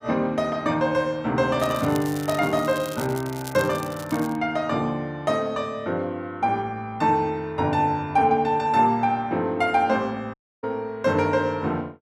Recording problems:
crackle; from 1.5 to 4.5 s; loose cable, SNR 16 dB
dropout; at 10 s

